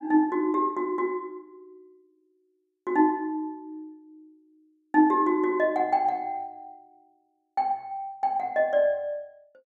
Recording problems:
none

